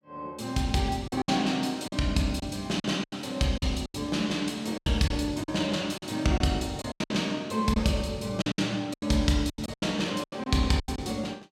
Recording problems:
packet loss; 12% of the sound replaced, filled with silence

